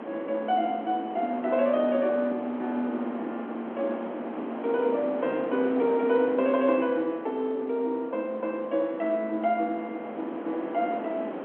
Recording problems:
phone line; 220 Hz to 3.4 kHz, G.711
wind on the microphone; below 770 Hz, SNR 9 dB

